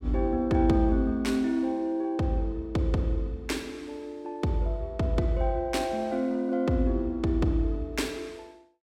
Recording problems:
none

